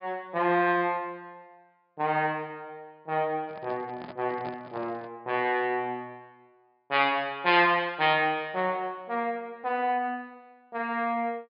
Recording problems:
low-pass filter; nothing above 5.1 kHz
handling noise; from 3.5 to 5 s; peak -10 dB vs average level

